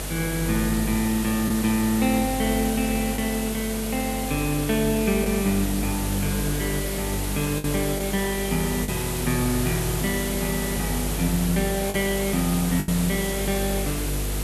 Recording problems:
hum; 50 Hz, harmonics up to 500 Hz, SNR 7 dB
background hiss; slope -3 dB per octave, SNR 5 dB
lost packets; 2% of the sound replaced, filled with the last packet

